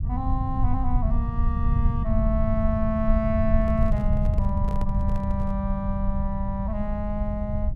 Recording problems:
rumble; below 96 Hz, SNR -2 dB
microphone handling noise; from 3.5 to 5.5 s; peak -7 dB vs average level

